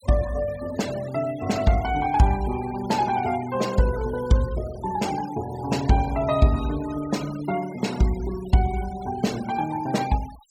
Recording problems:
denoising artefacts; signal-to-artefact ratio 17 dB

